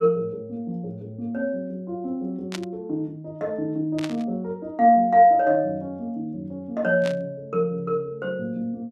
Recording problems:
static burst; at 2.5 s, at 4 s and at 7 s; peak -4 dB vs average level

